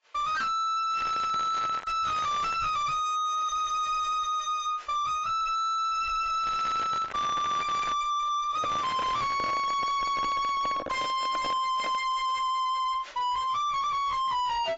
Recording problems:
lossy compression; AAC, log-spectral distance 2 dB, nothing above 7.3 kHz
distortion; soft clipping, signal-to-distortion ratio 5 dB
crackling; 4 times, first at 1 s; loose cable, SNR 12 dB
microphone handling noise; from 8.5 to 12 s; peak +1 dB vs average level

